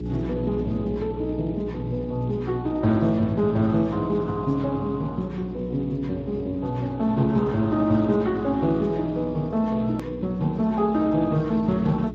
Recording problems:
codec artefacts; Speex, log-spectral distance 2 dB, nothing above 13.7 kHz
electrical hum; 60 Hz, harmonics up to 420 Hz, SNR 12 dB
hard cut with a click; at 10 s

